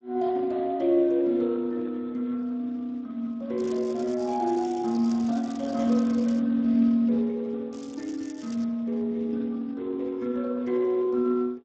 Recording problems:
codec artefacts; Speex, log-spectral distance 3 dB
crackling; from 3.5 to 6.5 s and at 7.5 s; loose cable, SNR 23 dB

